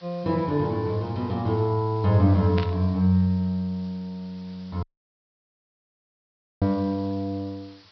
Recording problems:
treble missing; nothing above 5.5 kHz
lossy codec; MP3, log-spectral distance 7 dB
hiss; slope +1 dB per octave, SNR 27 dB
static burst; at 2.5 s; peak -3 dB vs average level
audio cutting out; at 5 s for 2 s

